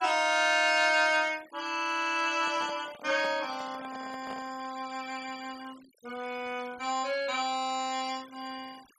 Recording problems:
denoising artefacts; signal-to-artefact ratio 21 dB
handling noise; from 2.5 to 4.5 s; peak -10 dB vs average level

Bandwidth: 14.5 kHz